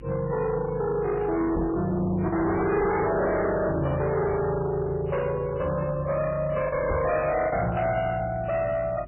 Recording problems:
codec artefacts; MP3, log-spectral distance 3 dB, nothing above 2.4 kHz
distortion; hard clipping, signal-to-distortion ratio 6 dB
electrical hum; 50 Hz, harmonics up to 400 Hz, SNR 19 dB
packet loss; 1.3% of the sound replaced, filled with the last packet
microphone bump; at 1.5 s and at 7 s; peak +1 dB vs average level

